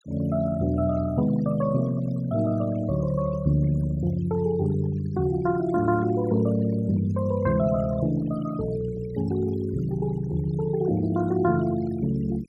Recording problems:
denoising artefacts; signal-to-artefact ratio 17 dB

